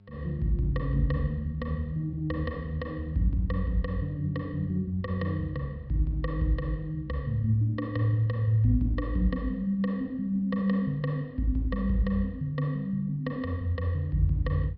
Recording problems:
treble cut off; nothing above 5.4 kHz
hum; 50 Hz, harmonics up to 700 Hz, SNR 27 dB

